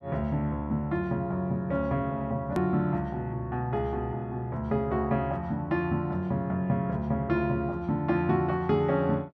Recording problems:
edit click; at 2.5 s

